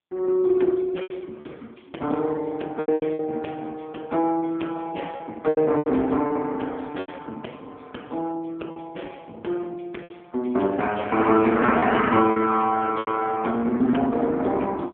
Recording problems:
telephone audio; 220 Hz to 3.7 kHz, AMR-NB
lost packets; 7% of the sound replaced, filled with repeated pitch periods

